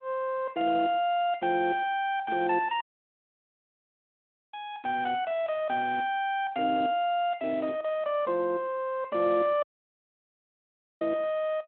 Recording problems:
telephone audio; 300 Hz to 3.5 kHz, Speex
dropout; at 3 s for 1.5 s and at 9.5 s for 1.5 s

